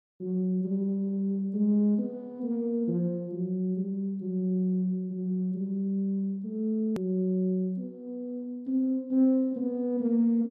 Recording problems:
hard cut with a click; at 7 s

